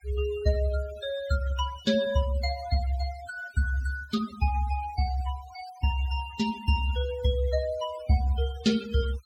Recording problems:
denoising artefacts; signal-to-artefact ratio 17 dB

